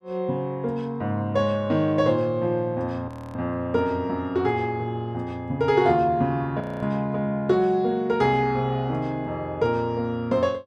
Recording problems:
audio freezing; at 3 s and at 6.5 s

